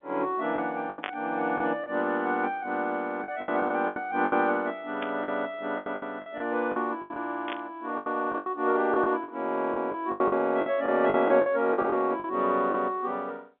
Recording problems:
telephone audio; 190 Hz to 3.7 kHz, G.711
lost packets; 11% of the sound replaced, filled with the last packet
static burst; at 1 s, at 5 s and at 7.5 s; peak -2 dB vs average level

